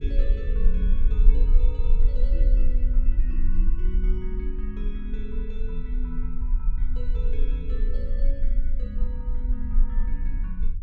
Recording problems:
low-frequency rumble; below 38 Hz, strongest tone 18 Hz, SNR -13 dB

